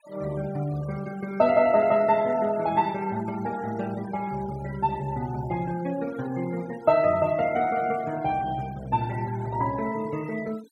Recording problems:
denoising artefacts; signal-to-artefact ratio 20 dB

